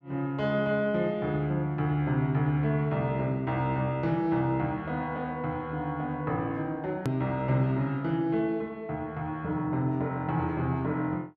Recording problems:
hard cut with a click; at 7 s

